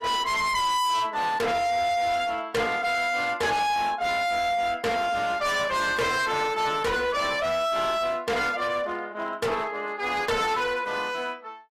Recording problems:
codec artefacts; AAC, log-spectral distance 3 dB, nothing above 14.6 kHz
distorted audio; hard clipping, signal-to-distortion ratio 6 dB

